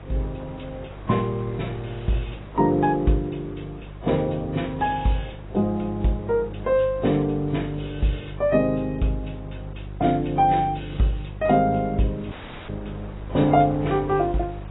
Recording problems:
codec artefacts; AAC, log-spectral distance 4 dB, nothing above 3.8 kHz
hum; 50 Hz, harmonics up to 550 Hz, SNR 14 dB
wind on the microphone; below 1.1 kHz, SNR 23 dB
audio cutting out; at 12 s

